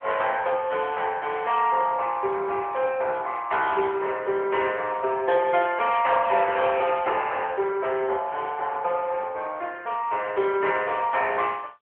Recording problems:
phone line; 340 Hz to 3.2 kHz, AMR-NB

